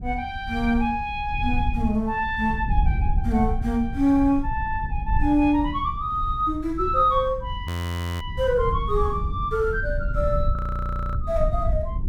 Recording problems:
wind noise; below 86 Hz, SNR 5 dB
audio freezing; at 7.5 s for 0.5 s and at 11 s for 0.5 s

